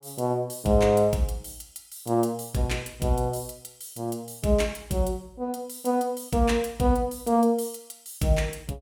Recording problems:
none

